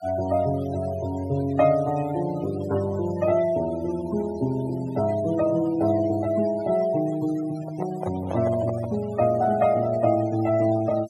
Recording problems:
noise reduction artefacts; signal-to-artefact ratio 18 dB
handling noise; from 7.5 to 9 s; peak -5 dB vs average level

